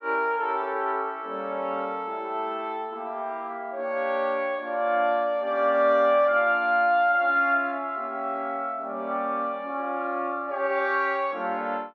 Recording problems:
none

